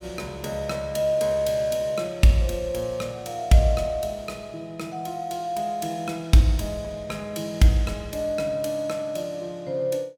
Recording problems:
none

